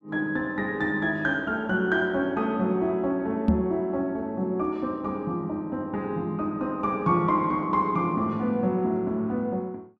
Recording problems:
microphone bump; at 3.5 s; peak +8 dB vs average level

